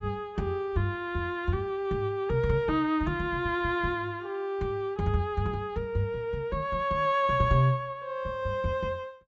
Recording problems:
low-pass filter; nothing above 7.7 kHz

